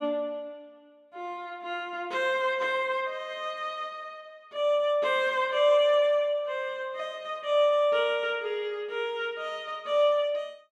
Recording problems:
none

